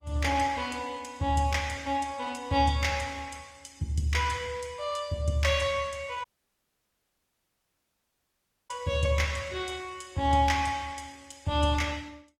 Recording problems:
codec artefacts; Opus, log-spectral distance 3 dB, nothing above 18.3 kHz
audio cutting out; at 6 s for 2.5 s

